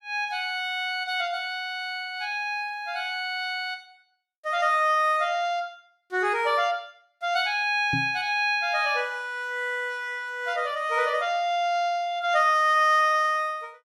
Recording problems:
microphone bump; at 8 s; peak -2 dB vs average level

